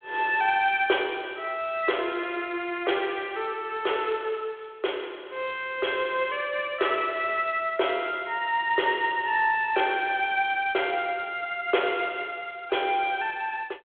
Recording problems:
phone line; 300 Hz to 3.5 kHz, G.726

